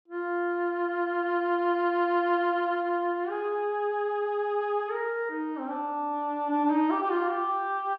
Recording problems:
none

